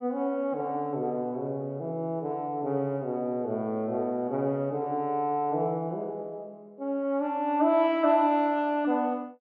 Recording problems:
none

